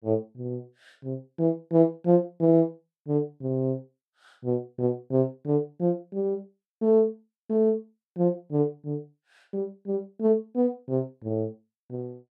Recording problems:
none

